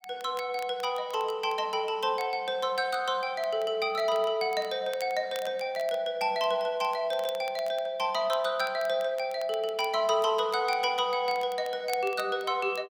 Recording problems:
crackle; vinyl, SNR 21 dB

